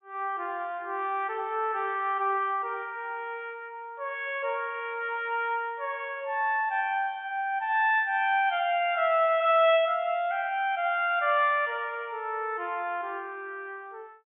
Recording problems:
treble cut off; nothing above 3.4 kHz

